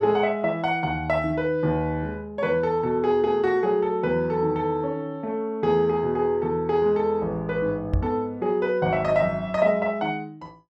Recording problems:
microphone bump; at 8 s; peak +3 dB vs average level

